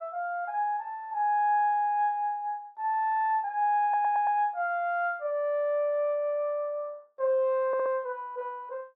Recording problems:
stutter; at 4 s and at 7.5 s

